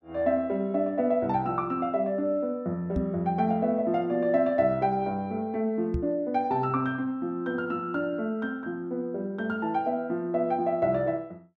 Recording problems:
microphone thump; at 3 s and at 6 s; peak +2 dB vs average level

